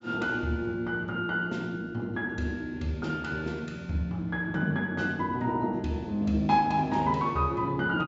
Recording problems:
low-pass filter; nothing above 8 kHz

